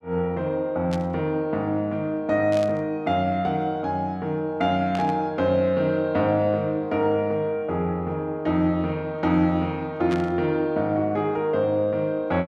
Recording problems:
static burst; 4 times, first at 1 s; peak -8 dB vs average level

